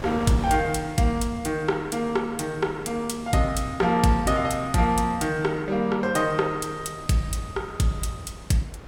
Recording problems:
wind noise; below 810 Hz, SNR 18 dB

